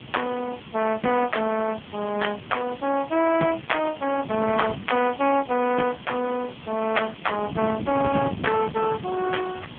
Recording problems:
telephone audio; 170 Hz to 3.4 kHz, AMR-NB
hiss; SNR 19 dB
wind noise; below 280 Hz, SNR 11 dB

